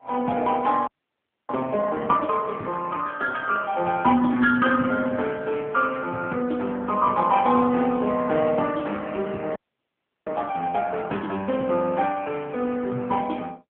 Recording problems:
phone line; 150 Hz to 3.3 kHz, AMR-NB
frozen audio; at 1 s for 0.5 s and at 9.5 s for 0.5 s

